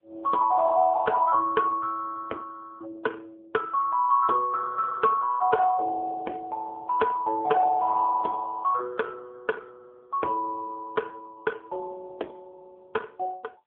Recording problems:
telephone audio; 300 Hz to 2 kHz, AMR-NB

